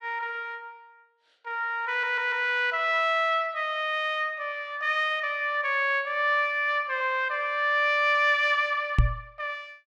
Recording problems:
stutter; at 2 s
microphone thump; at 9 s; peak +7 dB vs average level

